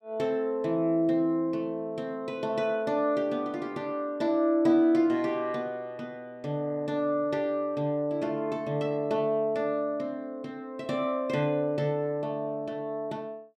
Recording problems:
none

